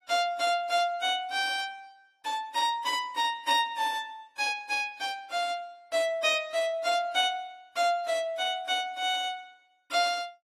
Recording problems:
codec artefacts; AAC, log-spectral distance 2 dB, nothing above 13.8 kHz

